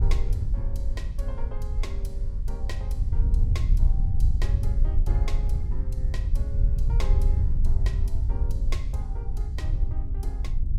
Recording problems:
wind noise; below 64 Hz, SNR -15 dB

